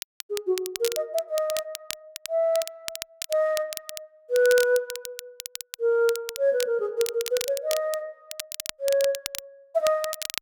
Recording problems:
crackling; vinyl, SNR 10 dB

